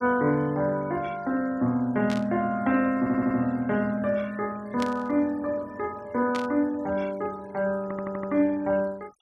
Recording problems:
denoising artefacts; signal-to-artefact ratio 26 dB
static burst; at 2 s, at 5 s and at 6.5 s; peak -5 dB vs average level
audio stuttering; at 3 s and at 8 s

